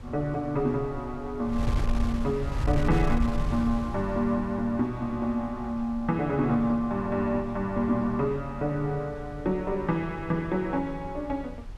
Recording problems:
wind on the microphone; below 90 Hz, SNR 8 dB

